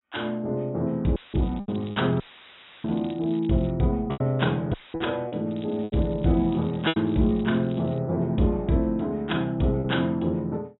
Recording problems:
treble missing; nothing above 3.9 kHz
packet loss; 5% of the sound replaced, filled with repeated pitch periods
audio cutting out; at 1 s, at 2 s for 0.5 s and at 4.5 s; filled with static
crackle; from 1.5 to 3.5 s and from 5.5 to 8 s; loose cable, SNR 26 dB

